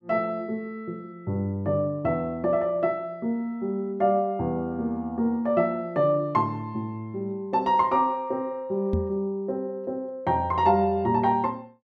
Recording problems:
microphone bump; at 9 s; peak +3 dB vs average level

